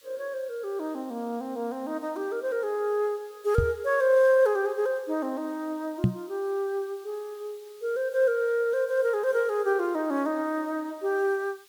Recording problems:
hiss; SNR 27 dB
microphone bump; at 3.5 s and at 6 s; peak +8 dB vs average level

